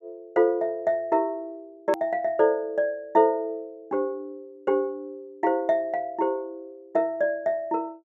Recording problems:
hard cut with a click; at 2 s

